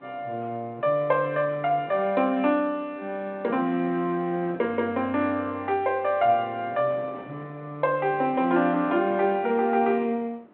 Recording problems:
telephone audio; 220 Hz to 3.5 kHz, G.726
wind on the microphone; below 800 Hz, SNR 23 dB

